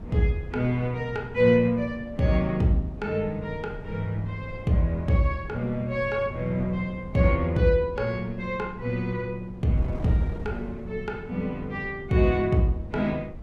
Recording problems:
wind on the microphone; below 200 Hz, SNR 14 dB

